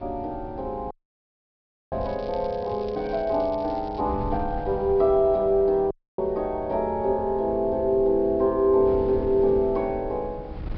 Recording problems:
treble missing; nothing above 5.5 kHz
wind on the microphone; below 150 Hz, SNR 16 dB
audio cutting out; at 1 s for 1 s and at 6 s
crackle; from 2 to 4 s; loose cable, SNR 27 dB

